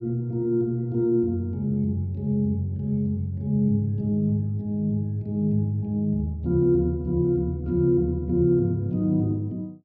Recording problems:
none

